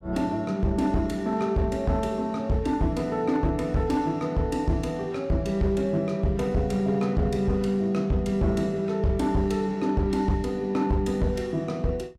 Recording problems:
distorted audio; hard clipping, signal-to-distortion ratio 12 dB

